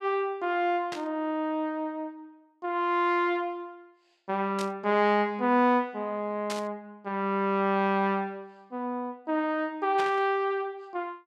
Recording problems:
static burst; 4 times, first at 1 s; peak -4 dB vs average level

